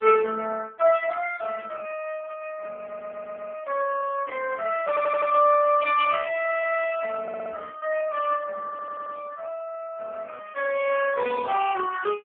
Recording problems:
phone line; 240 Hz to 3.1 kHz, AMR-NB
stutter; 4 times, first at 3 s

